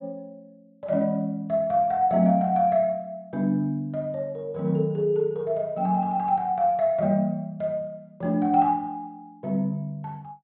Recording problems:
treble cut off; nothing above 4 kHz

